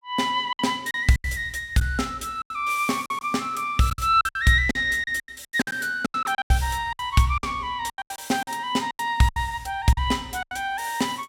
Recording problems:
packet loss; 14% of the sound replaced, filled with silence

